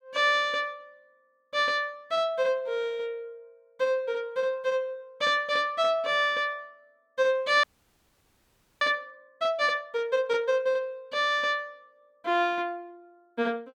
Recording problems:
frozen audio; at 7.5 s for 1 s

